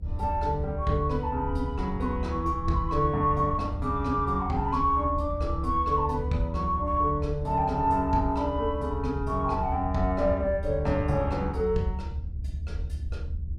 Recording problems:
rumble; below 78 Hz, SNR 7 dB

